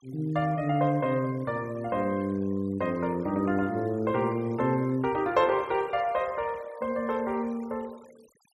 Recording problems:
noise reduction artefacts; signal-to-artefact ratio 26 dB

